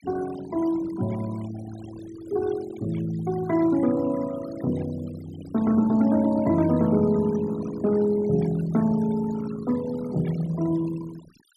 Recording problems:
noise reduction artefacts; signal-to-artefact ratio 19 dB

